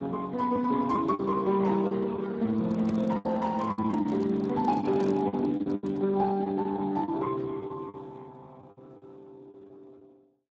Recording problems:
codec artefacts; Speex, log-spectral distance 3 dB
packet loss; 10% of the sound replaced, filled with the last packet
microphone handling noise; from 2.5 to 6 s; peak -11 dB vs average level

